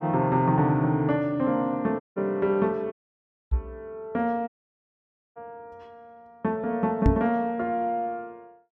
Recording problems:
dropout; at 2 s, at 3 s for 0.5 s and at 4.5 s for 1 s
knock on the microphone; at 3.5 s and at 7 s; peak +8 dB vs average level

